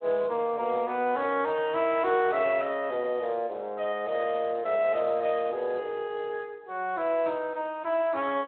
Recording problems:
telephone audio; 190 Hz to 3.7 kHz, Speex

